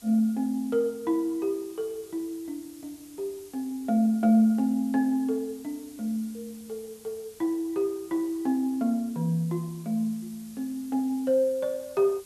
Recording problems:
background hiss; SNR 23 dB

